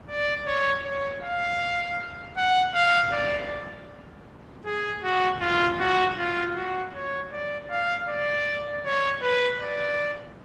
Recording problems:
lossy compression; AAC, then Opus, log-spectral distance 4 dB
wind noise; below 770 Hz, SNR 19 dB

